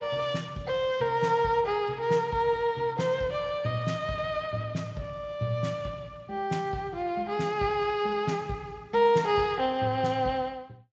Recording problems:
lossy compression; MP3, then Speex, log-spectral distance 3 dB

